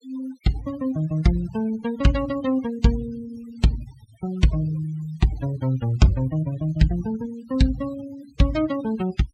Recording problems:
denoising artefacts; signal-to-artefact ratio 19 dB

